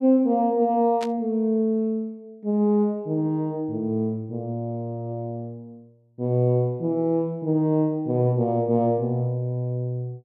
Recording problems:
static burst; at 1 s; peak -8 dB vs average level

